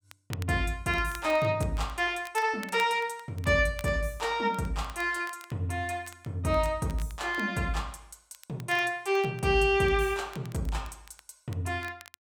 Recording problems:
crackling; vinyl, SNR 22 dB

